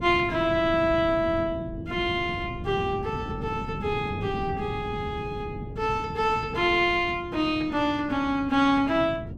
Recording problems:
wind noise; below 240 Hz, SNR 11 dB

